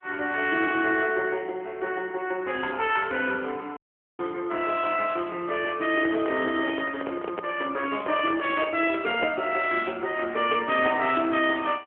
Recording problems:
phone line; 240 Hz to 3.3 kHz, AMR-NB
dropout; at 4 s
microphone handling noise; from 6 to 9.5 s; peak -2 dB vs average level

